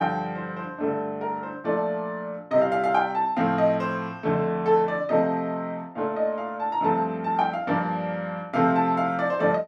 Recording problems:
none

